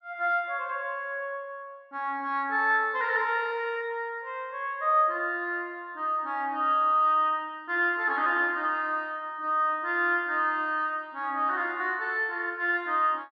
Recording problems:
none

